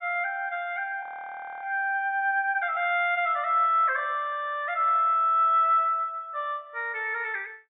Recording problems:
treble cut off; nothing above 4 kHz
frozen audio; at 1 s for 0.5 s

